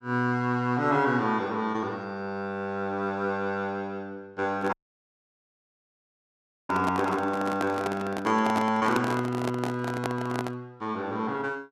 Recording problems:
handling noise; from 4.5 to 11 s; peak +3 dB vs average level
audio cutting out; at 4.5 s for 2 s

